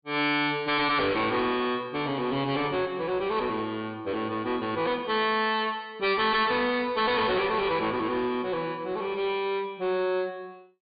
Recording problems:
treble missing; nothing above 4.7 kHz
distorted audio; hard clipping, uneven, signal-to-distortion ratio 7 dB

